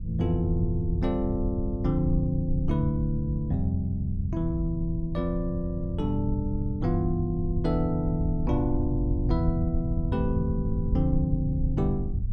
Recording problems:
low-frequency rumble; below 100 Hz, SNR 3 dB

